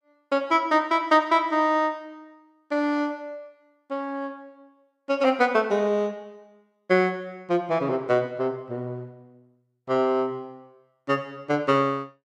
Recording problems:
none

